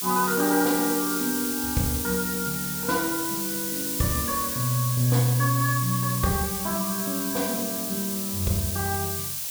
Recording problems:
background hiss; SNR 1 dB

